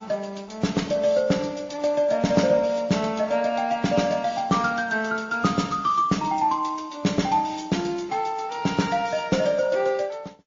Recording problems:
codec artefacts; Opus, then MP3, log-spectral distance 4 dB, nothing above 6.5 kHz

